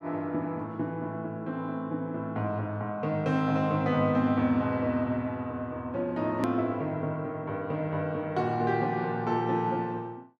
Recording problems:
click at an edit; at 6.5 s

